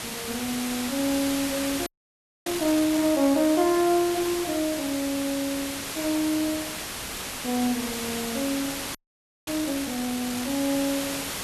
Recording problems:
background hiss; slope -1 dB per octave, SNR 5 dB
audio freezing; at 2 s for 0.5 s and at 9 s for 0.5 s

